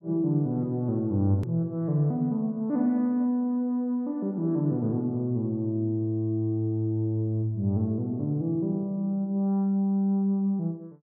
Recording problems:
hard cut with a click; at 1.5 s

